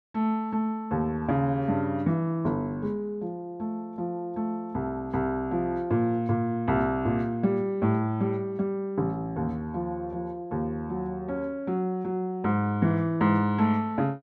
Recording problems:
none

